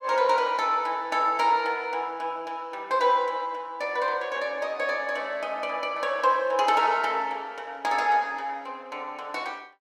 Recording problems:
none

